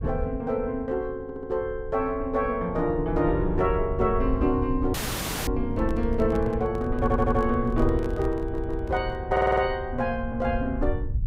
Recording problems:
low-frequency rumble; below 86 Hz, SNR 7 dB
audio stuttering; 4 times, first at 1 s
dropout; at 5 s for 0.5 s
microphone handling noise; from 5.5 to 9.5 s; peak -7 dB vs average level

